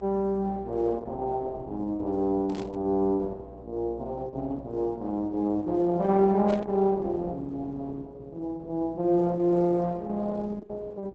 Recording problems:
lossy codec; Opus, log-spectral distance 2 dB
hum; 60 Hz, harmonics up to 360 Hz, SNR 19 dB
burst of static; at 2.5 s and at 6.5 s; peak -13 dB vs average level

